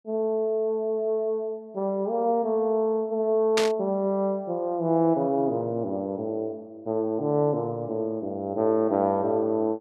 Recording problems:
burst of static; at 3.5 s; peak +4 dB vs average level

